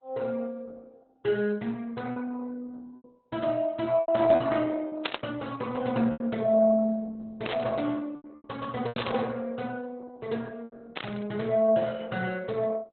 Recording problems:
lossy compression; Opus, log-spectral distance 4 dB, nothing above 4 kHz
lost packets; 5% of the sound replaced, filled with repeated pitch periods
static burst; 4 times, first at 5 s; peak +1 dB vs average level

